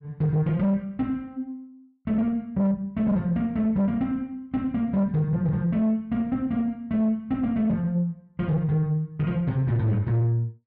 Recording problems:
distorted audio; soft clipping, signal-to-distortion ratio 10 dB

